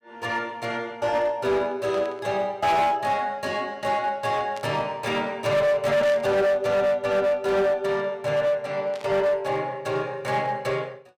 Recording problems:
distorted audio; hard clipping, uneven, signal-to-distortion ratio 10 dB
static burst; 4 times, first at 2 s; peak -11 dB vs average level

